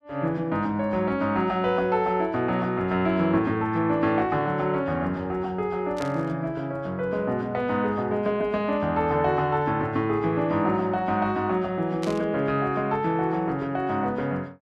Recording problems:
static burst; at 6 s and at 12 s; peak -8 dB vs average level

